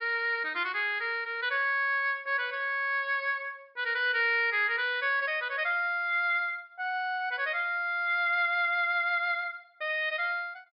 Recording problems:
treble cut off; nothing above 5.5 kHz

